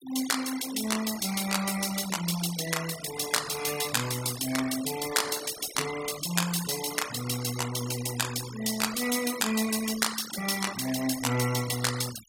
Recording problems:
noise reduction artefacts; signal-to-artefact ratio 10 dB

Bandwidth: 16.5 kHz